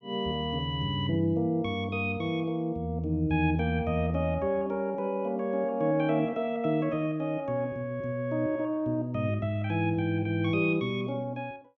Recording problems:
treble missing; nothing above 7.4 kHz

